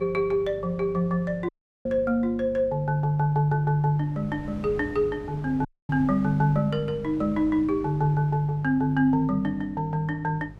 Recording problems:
mains hum; 50 Hz, harmonics up to 600 Hz, SNR 21 dB
wind noise; below 320 Hz, SNR 21 dB
audio cutting out; at 1.5 s and at 5.5 s

